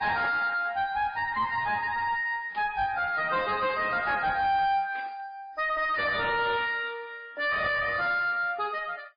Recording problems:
lossy codec; MP3, log-spectral distance 2 dB, nothing above 4.2 kHz
distortion; soft clipping, signal-to-distortion ratio 7 dB
static burst; at 2.5 s, at 5 s and at 6.5 s; peak -16 dB vs average level

